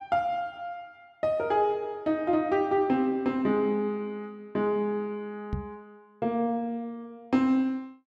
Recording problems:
microphone thump; at 5.5 s; peak +1 dB vs average level

